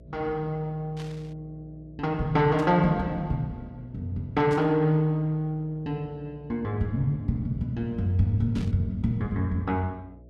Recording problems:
hum; 60 Hz, harmonics up to 660 Hz, SNR 23 dB
static burst; 4 times, first at 1 s; peak -13 dB vs average level

